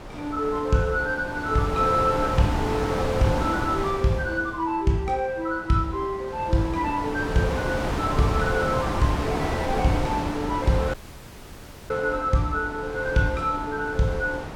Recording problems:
wind noise; below 960 Hz, SNR 5 dB
dropout; at 11 s for 1 s

